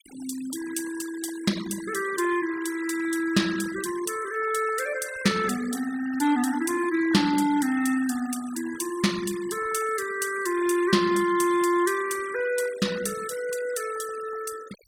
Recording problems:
denoising artefacts; signal-to-artefact ratio 15 dB

